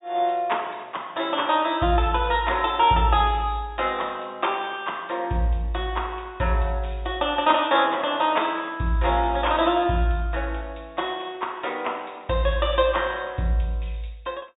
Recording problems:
treble cut off; nothing above 4 kHz

